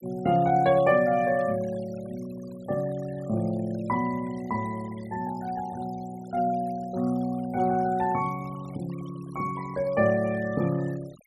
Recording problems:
denoising artefacts; signal-to-artefact ratio 22 dB

